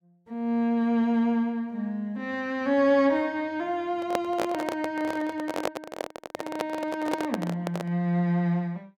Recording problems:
microphone handling noise; from 4 to 8 s; peak +3 dB vs average level

